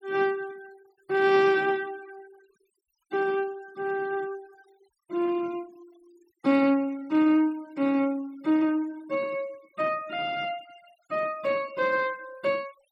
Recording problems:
noise reduction artefacts; signal-to-artefact ratio 25 dB

